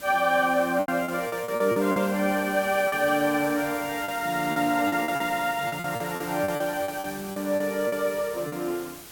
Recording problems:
background hiss; slope -2 dB per octave, SNR 14 dB
packet loss; 12% of the sound replaced, filled with repeated pitch periods

